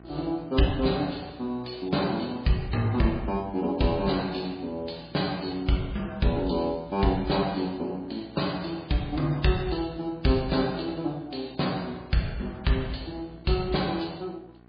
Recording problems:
lossy codec; MP3, log-spectral distance 5 dB, nothing above 4.8 kHz
mains hum; 60 Hz, harmonics up to 1.9 kHz, SNR 22 dB

